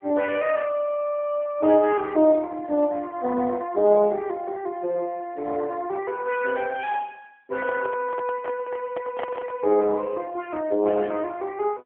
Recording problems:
telephone audio; 260 Hz to 3.1 kHz, AMR-NB
handling noise; from 7.5 to 9.5 s; peak -4 dB vs average level

